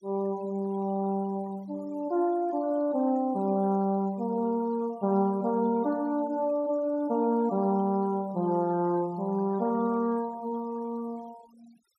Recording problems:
noise reduction artefacts; signal-to-artefact ratio 26 dB

